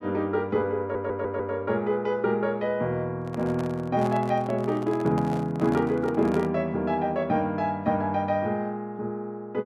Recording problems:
audio stuttering; at 1 s
handling noise; from 3 to 6.5 s; peak -5 dB vs average level

